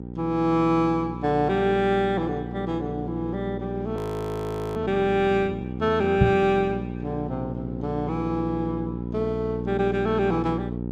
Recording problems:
electrical hum; 60 Hz, harmonics up to 780 Hz, SNR 7 dB
audio freezing; at 4 s for 1 s
microphone thump; at 6 s; peak +8 dB vs average level

